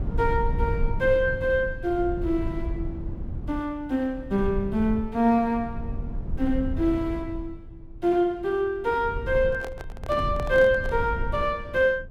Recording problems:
rumble; below 98 Hz, SNR 9 dB
microphone handling noise; from 9.5 to 11 s; peak -8 dB vs average level

